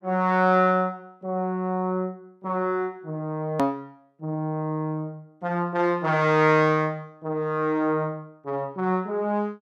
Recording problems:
hard cut with a click; at 3.5 s

